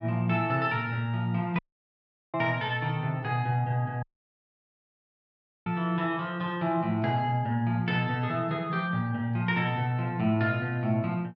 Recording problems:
audio cutting out; at 1.5 s for 0.5 s and at 4 s for 1.5 s

